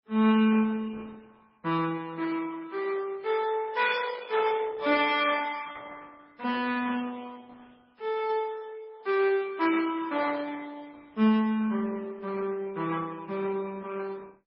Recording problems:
lossy compression; Opus, then MP3, log-spectral distance 4 dB, nothing above 5 kHz

